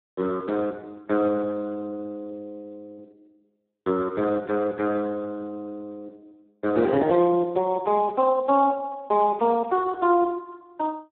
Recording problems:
telephone audio; 240 Hz to 2 kHz, Speex

